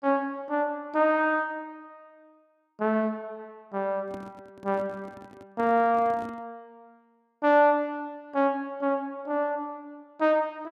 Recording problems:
handling noise; from 4 to 6.5 s; peak -11 dB vs average level

